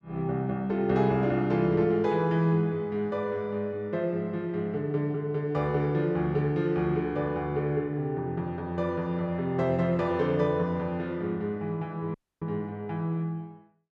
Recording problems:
dropout; at 12 s

